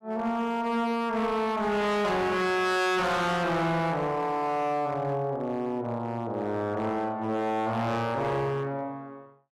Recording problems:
distortion; hard clipping, uneven, signal-to-distortion ratio 7 dB

